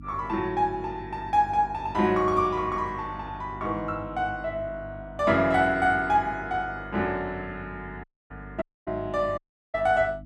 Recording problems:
mains hum; 50 Hz, harmonics up to 300 Hz, SNR 17 dB
audio cutting out; at 8 s, at 8.5 s and at 9.5 s

